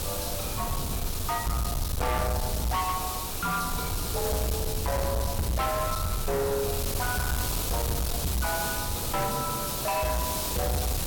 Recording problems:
distorted audio; hard clipping, signal-to-distortion ratio 8 dB
hiss; SNR 2 dB
low-frequency rumble; below 120 Hz, SNR 5 dB

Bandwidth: 17 kHz